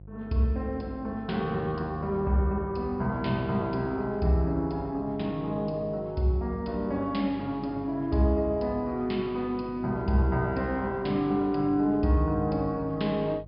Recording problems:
treble cut off; nothing above 5.5 kHz
hum; 50 Hz, harmonics up to 550 Hz, SNR 19 dB

